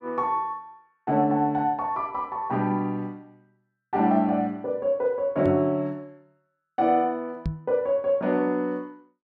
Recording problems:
knock on the microphone; at 5.5 s and at 7.5 s; peak 0 dB vs average level

